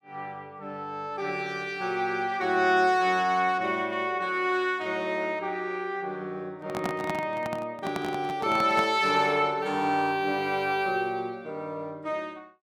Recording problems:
handling noise; from 6.5 to 9 s; peak -1 dB vs average level

